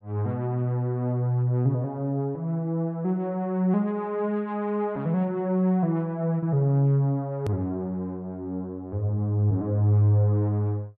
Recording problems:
edit click; at 7.5 s

